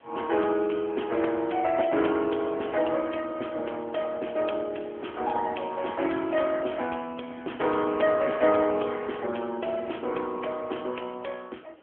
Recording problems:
phone line; 260 Hz to 3.3 kHz, AMR-NB
hiss; SNR 26 dB

